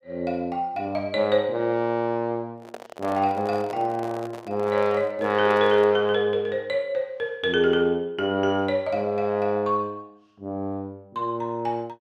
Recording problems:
microphone handling noise; from 2.5 to 6 s; peak -8 dB vs average level

